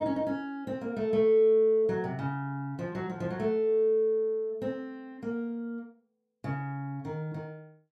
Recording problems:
none

